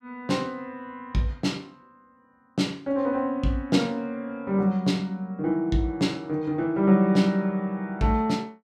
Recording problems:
none

